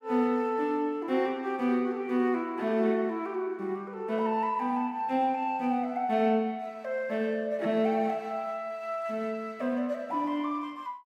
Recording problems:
none

